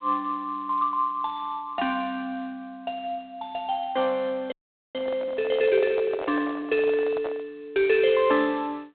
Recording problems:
phone line; 260 Hz to 3.9 kHz, G.726
microphone handling noise; from 4.5 to 7.5 s; peak -5 dB vs average level
frozen audio; at 4.5 s

